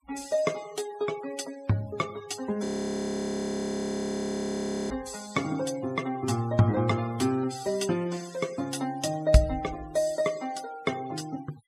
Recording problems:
denoising artefacts; signal-to-artefact ratio 18 dB
frozen audio; at 2.5 s for 2.5 s

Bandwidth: 15 kHz